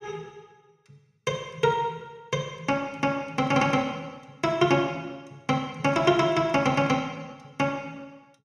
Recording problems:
none

